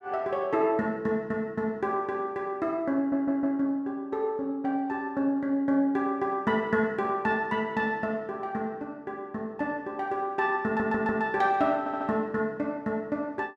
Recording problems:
stutter; at 3 s, at 11 s and at 12 s

